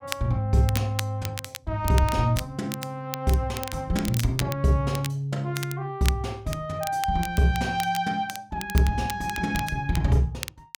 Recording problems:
crackling; vinyl, SNR 11 dB

